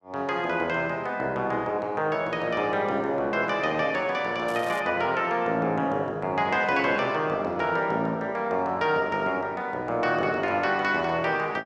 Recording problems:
crackling; at 4.5 s; loose cable, SNR 21 dB

